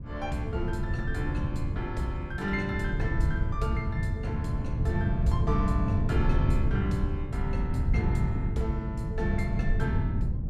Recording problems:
wind on the microphone; below 140 Hz, SNR -4 dB

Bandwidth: 15 kHz